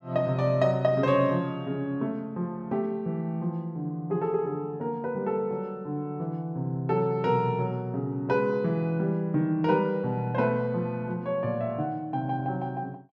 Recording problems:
none

